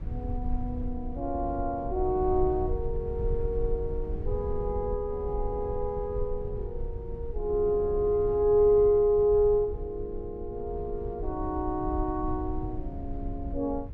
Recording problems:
rumble; below 72 Hz, SNR 9 dB

